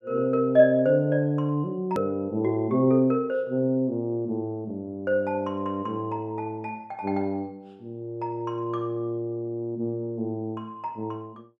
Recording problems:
edit click; at 2 s

